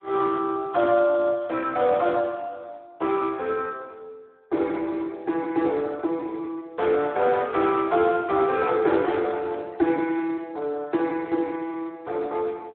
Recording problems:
telephone audio; 300 Hz to 3 kHz, Speex

